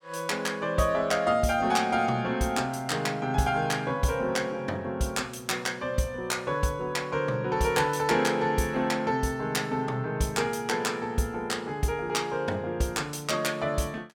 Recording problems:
none

